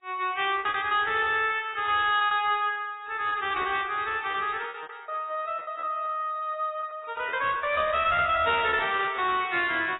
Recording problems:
lossy compression; AAC, then AAC, log-spectral distance 3 dB, nothing above 3.4 kHz
distorted audio; hard clipping, uneven, signal-to-distortion ratio 11 dB
lost packets; 12% of the sound replaced, filled with repeated pitch periods

